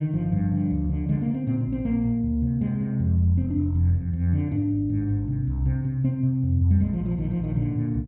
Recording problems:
none

